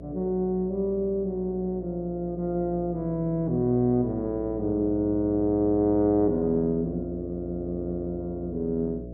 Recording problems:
hum; 60 Hz, harmonics up to 660 Hz, SNR 13 dB

